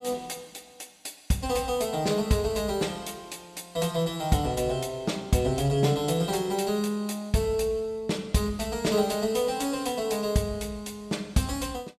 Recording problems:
none

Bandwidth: 14 kHz